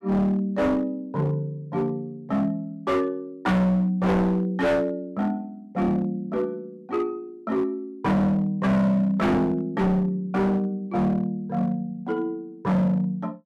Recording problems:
distortion; hard clipping, signal-to-distortion ratio 6 dB

